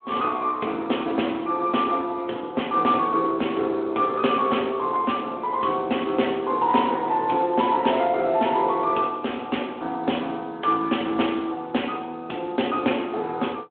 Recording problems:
telephone audio; 240 Hz to 3.5 kHz, Speex

